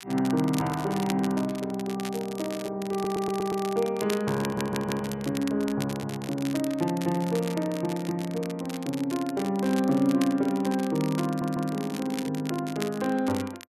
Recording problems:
crackle; vinyl, SNR 13 dB
stutter; at 3 s, at 4.5 s and at 11 s

